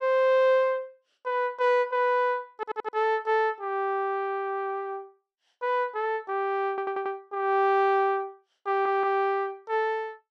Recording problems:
audio stuttering; at 2.5 s, at 6.5 s and at 8.5 s

